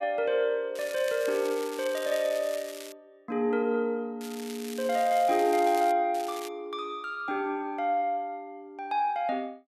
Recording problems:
crackle; from 1 to 3 s, from 4 to 6 s and at 6 s; loose cable, SNR 15 dB

